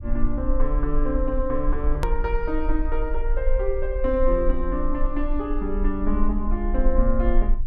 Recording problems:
low-frequency rumble; below 40 Hz, strongest tone 22 Hz, SNR 1 dB
hard cut with a click; at 2 s

